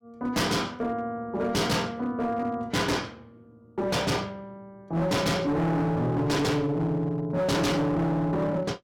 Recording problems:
distorted audio; hard clipping, signal-to-distortion ratio 6 dB

